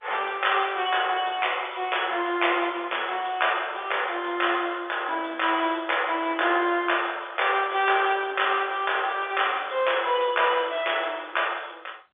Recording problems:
telephone audio; 300 Hz to 3.6 kHz, G.711

